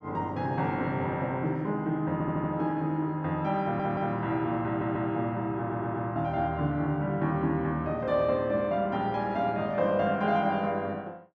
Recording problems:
audio stuttering; 4 times, first at 2 s

